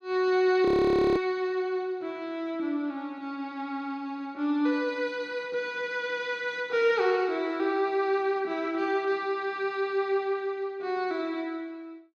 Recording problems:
audio freezing; at 0.5 s for 0.5 s

